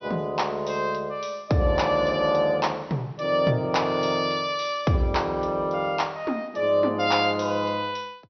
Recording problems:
treble cut off; nothing above 6 kHz

